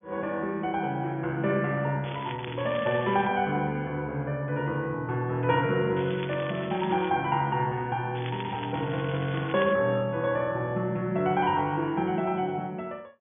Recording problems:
treble cut off; nothing above 3.5 kHz
crackle; from 2 to 3.5 s, from 6 to 7 s and from 8 to 9.5 s; loose cable, SNR 14 dB

